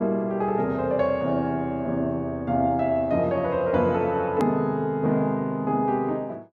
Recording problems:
hard cut with a click; at 4.5 s

